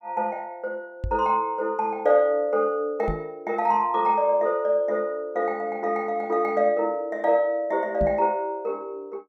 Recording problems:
microphone thump; at 1 s, at 3 s and at 8 s; peak -1 dB vs average level

